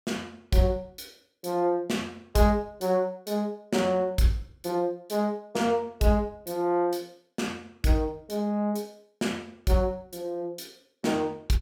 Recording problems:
none

